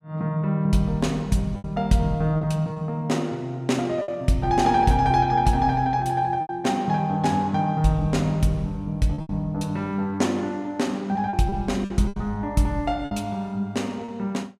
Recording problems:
lost packets; 5% of the sound replaced, filled with repeated pitch periods

